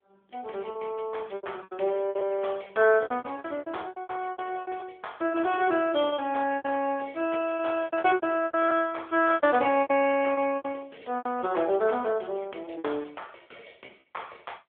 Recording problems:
telephone audio; 280 Hz to 3.4 kHz, AMR-NB
lost packets; 15% of the sound replaced, filled with repeated pitch periods

